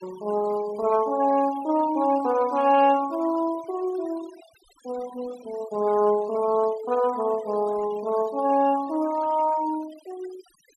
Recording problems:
denoising artefacts; signal-to-artefact ratio 20 dB

